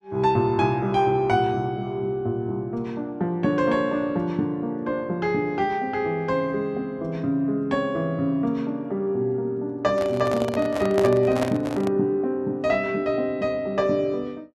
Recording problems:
microphone handling noise; from 10 to 12 s; peak +1 dB vs average level

